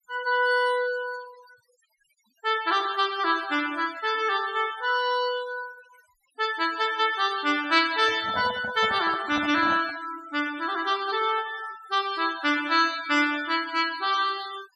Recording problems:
denoising artefacts; signal-to-artefact ratio 16 dB
microphone handling noise; from 8 to 10 s; peak -6 dB vs average level

